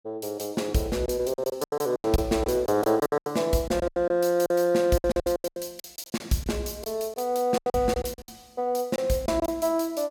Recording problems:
packet loss; 16% of the sound replaced, filled with silence

